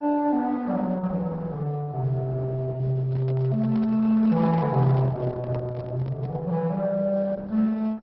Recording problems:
codec artefacts; Opus, then MP2, log-spectral distance 2 dB, nothing above 5.5 kHz
microphone handling noise; from 3 to 6.5 s; peak -9 dB vs average level

